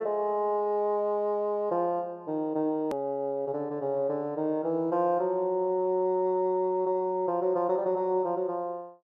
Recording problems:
edit click; at 3 s

